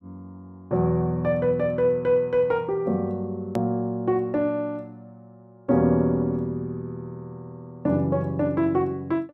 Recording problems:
edit click; at 3.5 s

